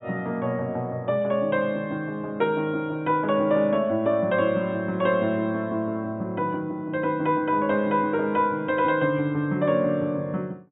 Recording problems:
low-pass filter; nothing above 4 kHz

